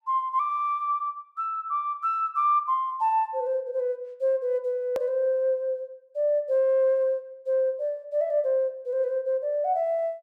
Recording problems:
edit click; at 5 s

